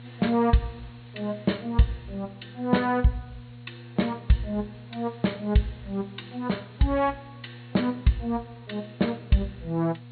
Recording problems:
low-pass filter; nothing above 4.4 kHz
mains hum; 60 Hz, harmonics up to 720 Hz, SNR 18 dB
hiss; SNR 29 dB

